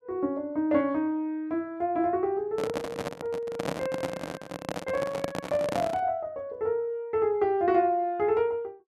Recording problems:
microphone handling noise; from 2.5 to 6 s; peak +2 dB vs average level

